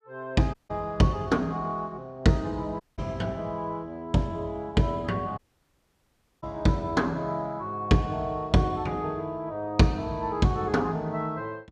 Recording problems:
dropout; at 0.5 s, at 3 s and at 5.5 s for 1 s

